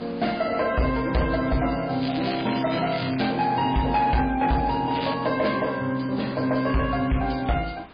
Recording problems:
lossy codec; MP3, log-spectral distance 7 dB, nothing above 4.8 kHz
distorted audio; soft clipping, signal-to-distortion ratio 11 dB
hiss; SNR 22 dB
crackle; from 2 to 3.5 s and at 5 s; loose cable, SNR 10 dB

